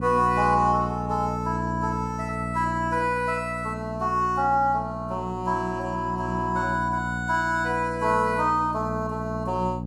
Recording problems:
electrical hum; 60 Hz, harmonics up to 600 Hz, SNR 8 dB

